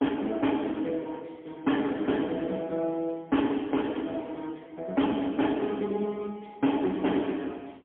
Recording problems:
telephone audio; 190 Hz to 3.4 kHz, AMR-NB, then MP3
distorted audio; hard clipping, signal-to-distortion ratio 11 dB

